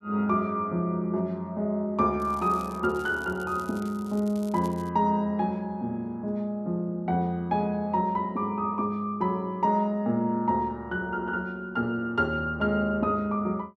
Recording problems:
crackle; from 2 to 5 s; loose cable, SNR 24 dB

